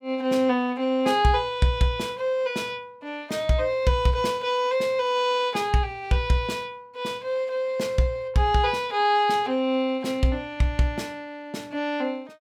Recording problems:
none

